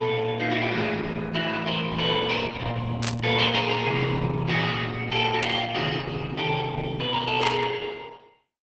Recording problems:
lossy compression; Opus, log-spectral distance 5 dB
static burst; at 3 s, at 5.5 s and at 7.5 s; peak +1 dB vs average level

